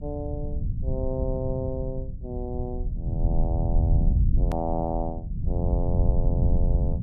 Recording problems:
rumble; below 92 Hz, SNR -5 dB
click at an edit; at 4.5 s

